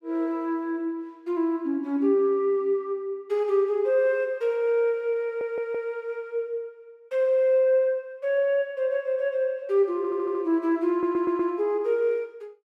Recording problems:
audio stuttering; at 5 s, at 10 s and at 11 s

